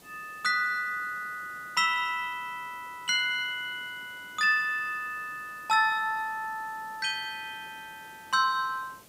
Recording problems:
hiss; SNR 24 dB

